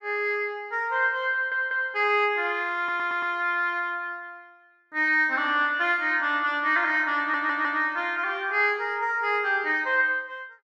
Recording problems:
stutter; at 1.5 s, at 3 s and at 7 s

